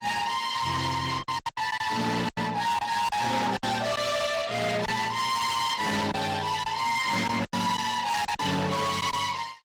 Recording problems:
lossy compression; Opus, log-spectral distance 5 dB, nothing above 20.1 kHz
distorted audio; hard clipping, signal-to-distortion ratio 8 dB
lost packets; 7% of the sound replaced, filled with silence

